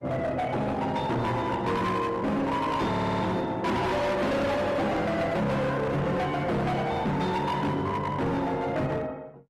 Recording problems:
lossy compression; Opus, log-spectral distance 2 dB, nothing above 13.1 kHz
distortion; hard clipping, signal-to-distortion ratio 6 dB
stutter; at 3 s

